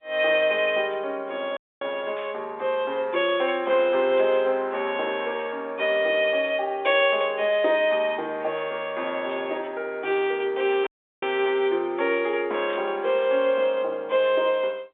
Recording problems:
phone line; 300 Hz to 3.7 kHz, G.711
audio cutting out; at 1.5 s and at 11 s
static burst; 4 times, first at 2 s; peak -12 dB vs average level

